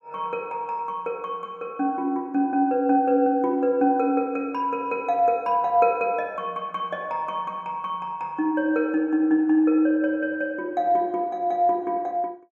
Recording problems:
none

